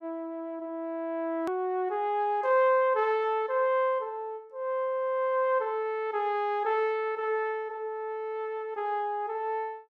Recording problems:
click at an edit; at 1.5 s

